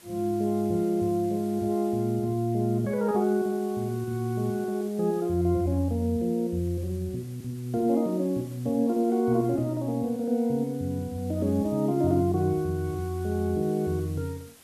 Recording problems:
hiss; slope -1 dB per octave, SNR 24 dB

